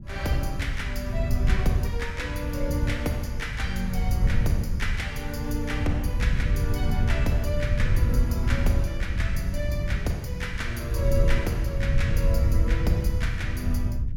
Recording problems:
wind noise; below 96 Hz, SNR -4 dB

